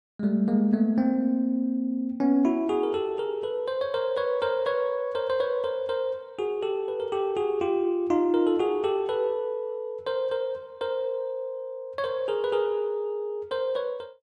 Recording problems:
none

